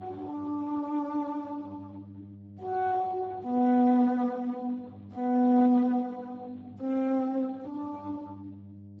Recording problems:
codec artefacts; Speex, then Speex, log-spectral distance 3 dB
electrical hum; 50 Hz, harmonics up to 600 Hz, SNR 19 dB

